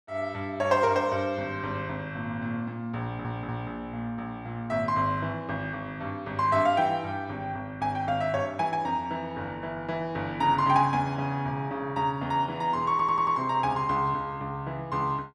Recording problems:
stutter; at 3 s and at 13 s

